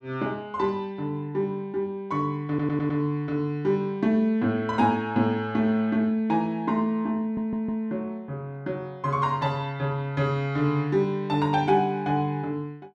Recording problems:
audio stuttering; at 2.5 s and at 7 s

